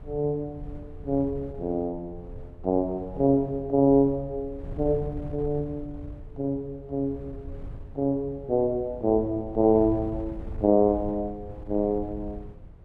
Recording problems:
wind on the microphone; below 110 Hz, SNR 15 dB

